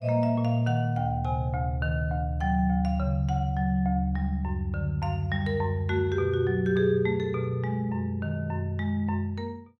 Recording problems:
none

